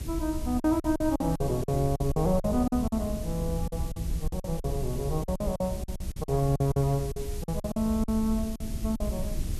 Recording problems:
background hiss; slope +2 dB per octave, SNR 16 dB
low-frequency rumble; below 88 Hz, SNR 7 dB
lost packets; 13% of the sound replaced, filled with silence

